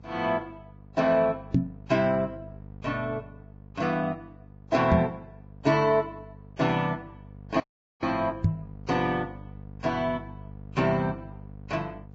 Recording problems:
codec artefacts; Vorbis, log-spectral distance 2 dB, nothing above 7.3 kHz
electrical hum; 50 Hz, harmonics up to 950 Hz, SNR 18 dB
knock on the microphone; at 1.5 s, at 5 s and at 8.5 s; peak +9 dB vs average level
dropout; at 7.5 s

